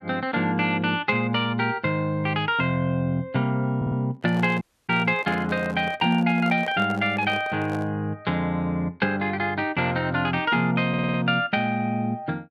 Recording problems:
stutter; at 4 s and at 11 s
handling noise; from 4 to 8 s; peak -9 dB vs average level
dropout; at 4.5 s

